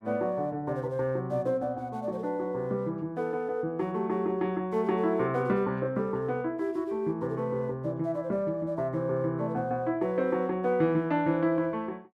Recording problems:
none

